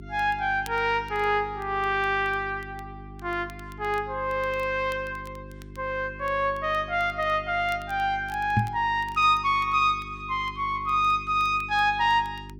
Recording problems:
hum; 50 Hz, harmonics up to 400 Hz, SNR 18 dB
crackling; vinyl, SNR 29 dB
microphone bump; at 8.5 s; peak +5 dB vs average level

